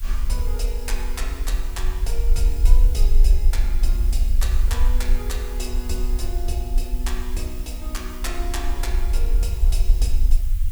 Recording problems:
hiss; SNR 11 dB
rumble; below 46 Hz, strongest tone 26 Hz, SNR -9 dB

